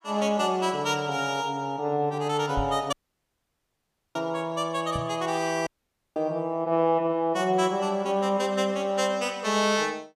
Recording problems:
microphone thump; at 2.5 s and at 5 s; peak -2 dB vs average level
dropout; at 3 s for 1 s and at 5.5 s

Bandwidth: 15 kHz